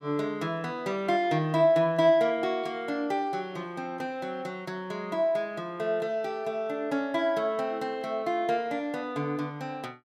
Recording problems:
none

